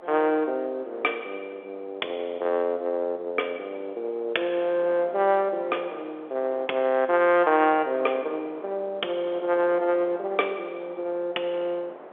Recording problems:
phone line; 320 Hz to 3.6 kHz, G.711
wind on the microphone; below 900 Hz, SNR 19 dB

